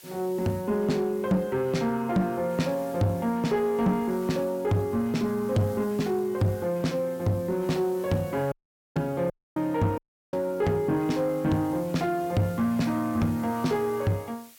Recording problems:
distorted audio; soft clipping, signal-to-distortion ratio 12 dB
background hiss; slope +1 dB per octave, SNR 23 dB
audio cutting out; at 8.5 s, at 9.5 s and at 10 s

